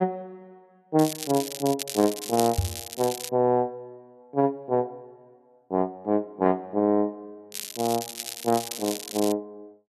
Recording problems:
crackle; from 1 to 3.5 s and from 7.5 to 9.5 s; loose cable, SNR 8 dB
microphone bump; at 2.5 s; peak +5 dB vs average level

